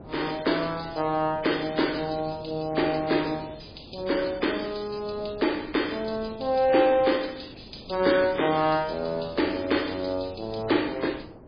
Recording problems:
lossy compression; MP3, log-spectral distance 10 dB, nothing above 5 kHz
wind noise; below 500 Hz, SNR 19 dB

